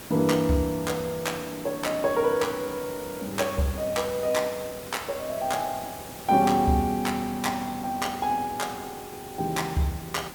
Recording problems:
hiss; slope -4 dB per octave, SNR 13 dB
crackling; from 3.5 to 5 s and at 6 s; loose cable, SNR 29 dB

